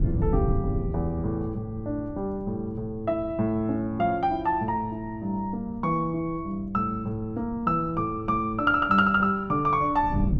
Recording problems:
wind on the microphone; below 150 Hz, SNR 11 dB

